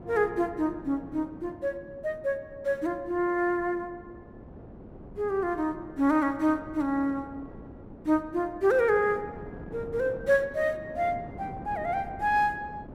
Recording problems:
wind on the microphone; below 440 Hz, SNR 17 dB

